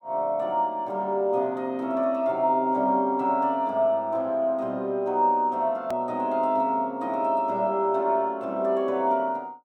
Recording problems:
edit click; at 6 s

